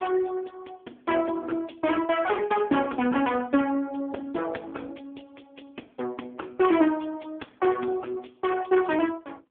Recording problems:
phone line; 190 Hz to 3.3 kHz, AMR-NB

